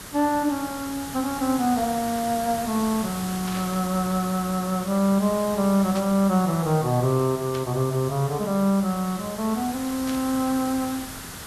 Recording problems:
background hiss; SNR 11 dB
static burst; 4 times, first at 3.5 s; peak -8 dB vs average level

